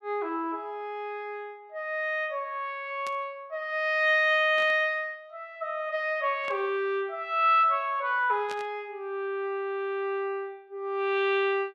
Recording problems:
burst of static; 4 times, first at 3 s; peak -9 dB vs average level

